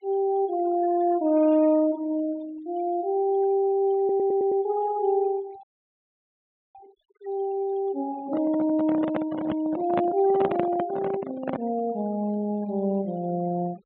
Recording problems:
treble missing; nothing above 4 kHz
denoising artefacts; signal-to-artefact ratio 22 dB
audio stuttering; at 4 s
audio cutting out; at 5.5 s for 1 s
microphone handling noise; from 8 to 12 s; peak +2 dB vs average level

